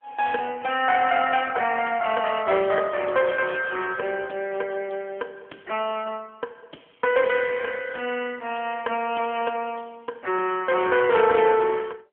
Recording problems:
telephone audio; 280 Hz to 3.3 kHz, AMR-NB

